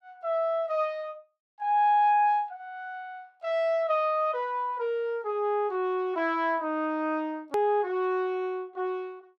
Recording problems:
hard cut with a click; at 7.5 s

